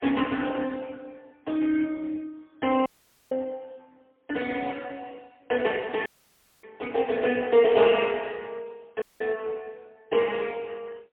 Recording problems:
phone line; 260 Hz to 3.5 kHz, AMR-NB, then MP3
audio cutting out; at 3 s, at 6 s for 0.5 s and at 9 s

